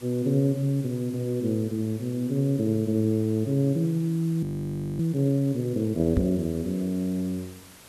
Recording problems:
background hiss; slope -2 dB per octave, SNR 22 dB
frozen audio; at 4.5 s for 0.5 s
microphone bump; at 6 s; peak +3 dB vs average level

